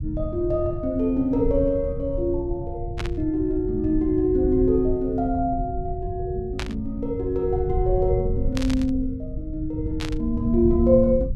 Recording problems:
low-frequency rumble; below 100 Hz, SNR 7 dB
burst of static; 4 times, first at 3 s; peak -3 dB vs average level

